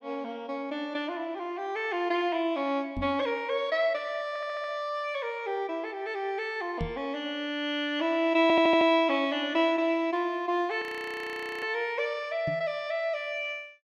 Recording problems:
microphone bump; at 3 s, at 7 s and at 12 s; peak -1 dB vs average level
stutter; at 4.5 s and at 8.5 s
audio freezing; at 11 s for 1 s

